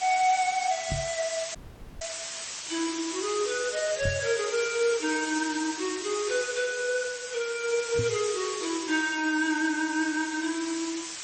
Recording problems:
codec artefacts; AAC, then MP3, log-spectral distance 17 dB, nothing above 7.6 kHz
background hiss; slope +2 dB per octave, SNR 6 dB
microphone bump; at 1 s, at 4 s and at 8 s; peak +1 dB vs average level
dropout; at 1.5 s

